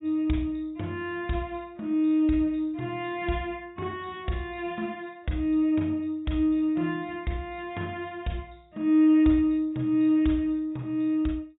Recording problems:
treble missing; nothing above 3.7 kHz

